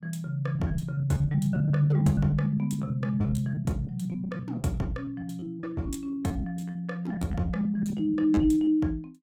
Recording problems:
lost packets; 17% of the sound replaced, filled with repeated pitch periods

